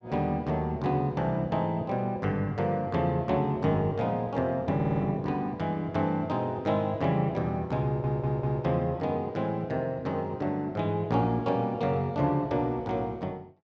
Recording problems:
stutter; at 5 s and at 8 s

